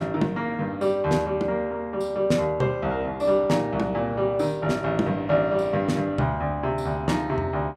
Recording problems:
none

